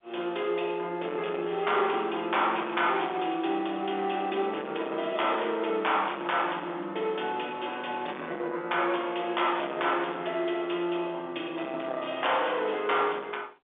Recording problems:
telephone audio; 240 Hz to 3.6 kHz, G.711
distortion; soft clipping, signal-to-distortion ratio 13 dB

